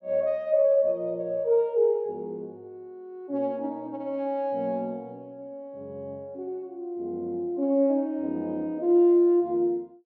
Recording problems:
none

